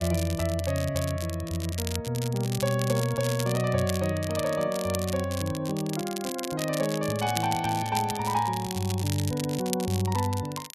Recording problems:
crackling; vinyl, SNR 9 dB

